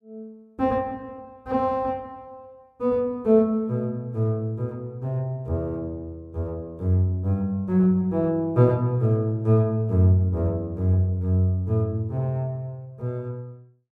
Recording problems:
none

